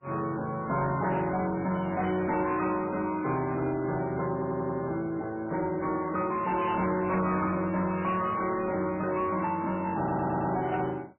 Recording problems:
codec artefacts; MP3, log-spectral distance 3 dB, nothing above 2.5 kHz
distorted audio; soft clipping, signal-to-distortion ratio 11 dB
stutter; at 4.5 s and at 10 s

